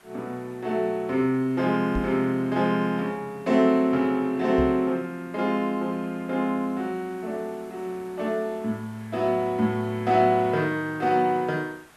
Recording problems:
hiss; SNR 27 dB
knock on the microphone; at 2 s and at 4.5 s; peak -1 dB vs average level

